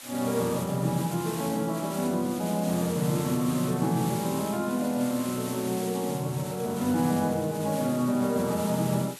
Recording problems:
hiss; slope +1 dB per octave, SNR 12 dB

